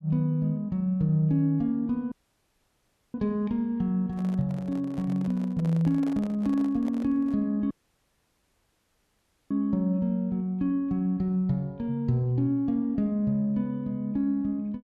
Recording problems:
dropout; at 2 s for 1 s and at 7.5 s for 2 s
handling noise; from 4 to 7.5 s; peak -10 dB vs average level

